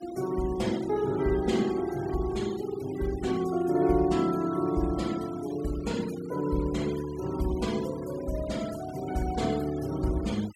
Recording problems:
noise reduction artefacts; signal-to-artefact ratio 18 dB

